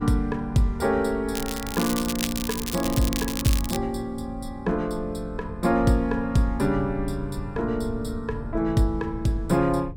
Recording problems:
rumble; below 100 Hz, SNR 12 dB
crackling; from 1.5 to 4 s; loose cable, SNR 6 dB

